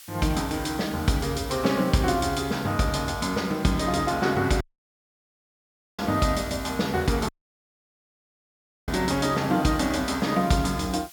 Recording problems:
hiss; slope +4 dB per octave, SNR 19 dB
audio cutting out; at 4.5 s for 1.5 s and at 7.5 s for 1.5 s

